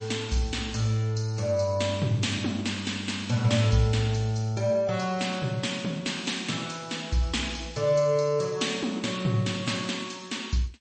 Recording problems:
lossy codec; MP3, log-spectral distance 5 dB, nothing above 8.2 kHz

